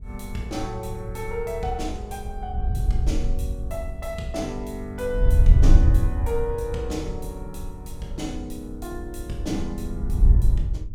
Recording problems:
wind noise; below 68 Hz, SNR -7 dB

